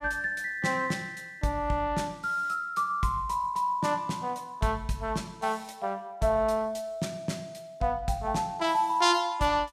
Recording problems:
none

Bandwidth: 15 kHz